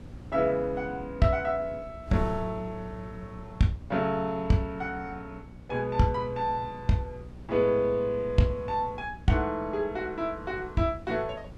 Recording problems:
electrical hum; 60 Hz, harmonics up to 840 Hz, SNR 21 dB
wind noise; below 200 Hz, SNR 18 dB

